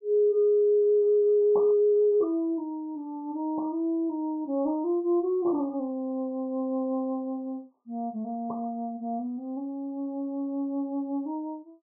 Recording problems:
distorted audio; soft clipping, signal-to-distortion ratio 10 dB
static burst; 4 times, first at 1.5 s; peak -4 dB vs average level

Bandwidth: 1 kHz